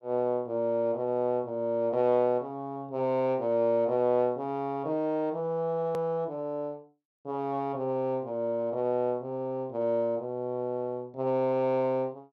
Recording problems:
edit click; at 6 s

